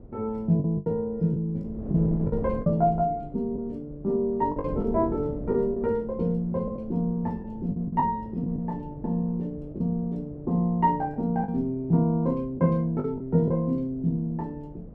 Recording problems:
wind noise; below 280 Hz, SNR 14 dB
packet loss; 6% of the sound replaced, filled with the last packet

